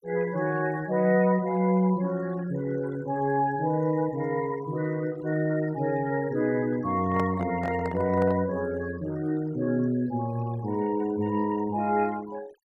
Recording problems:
noise reduction artefacts; signal-to-artefact ratio 21 dB
handling noise; from 7 to 8.5 s; peak -4 dB vs average level

